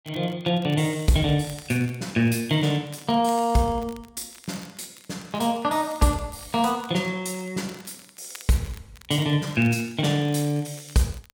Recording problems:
crackling; vinyl, SNR 24 dB

